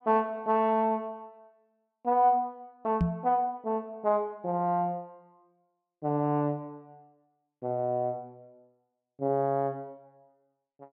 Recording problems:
knock on the microphone; at 3 s; peak +6 dB vs average level

